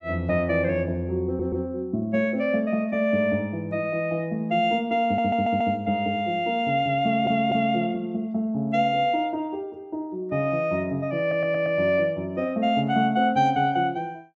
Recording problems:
audio stuttering; 4 times, first at 1.5 s

